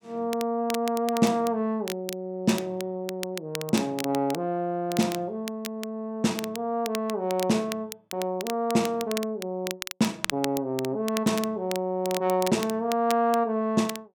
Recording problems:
crackle; vinyl, SNR 11 dB

